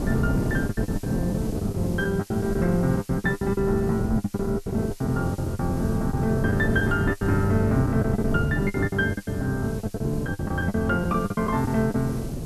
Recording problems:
background hiss; SNR 21 dB
wind on the microphone; below 270 Hz, SNR 4 dB
lost packets; 16% of the sound replaced, filled with the last packet

